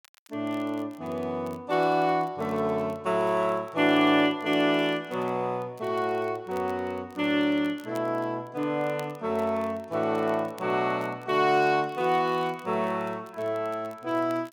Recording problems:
crackling; vinyl, SNR 29 dB

